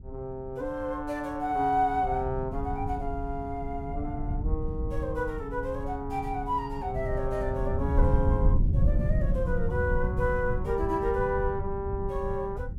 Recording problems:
rumble; below 100 Hz, SNR 1 dB

